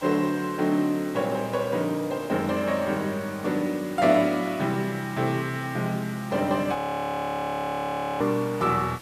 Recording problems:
background hiss; slope -2 dB per octave, SNR 19 dB
frozen audio; at 7 s for 1.5 s

